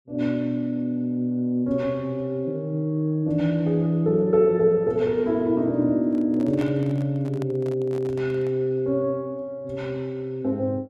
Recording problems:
microphone handling noise; from 6 to 8.5 s; peak -8 dB vs average level

